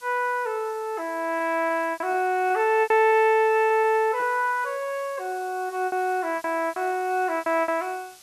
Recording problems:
background hiss; slope +2 dB per octave, SNR 24 dB
packet loss; 8% of the sound replaced, filled with repeated pitch periods

